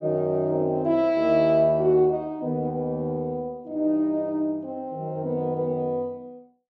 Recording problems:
none

